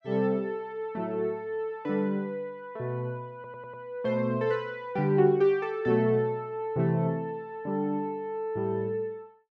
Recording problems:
audio stuttering; at 3.5 s

